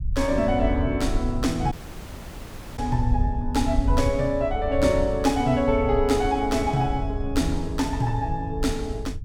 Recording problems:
low-frequency rumble; below 86 Hz, SNR 6 dB
audio cutting out; at 1.5 s for 1 s

